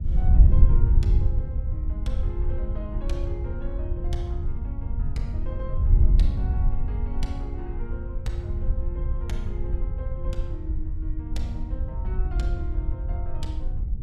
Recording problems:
wind noise; below 72 Hz, SNR -12 dB

